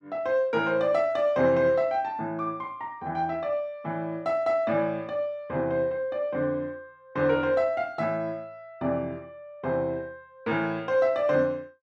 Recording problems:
none

